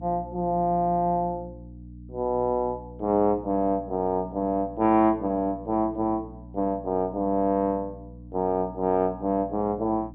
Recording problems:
low-pass filter; nothing above 4 kHz
mains hum; 60 Hz, harmonics up to 300 Hz, SNR 18 dB

